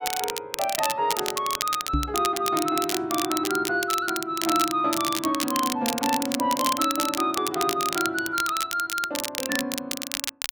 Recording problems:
crackling; vinyl, SNR 4 dB
microphone bump; at 2 s; peak +4 dB vs average level

